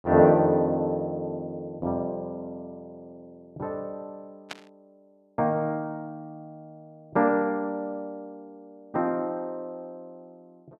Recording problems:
burst of static; at 4.5 s; peak -5 dB vs average level

